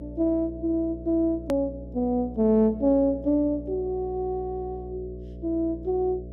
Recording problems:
hum; 60 Hz, harmonics up to 660 Hz, SNR 15 dB
edit click; at 1.5 s

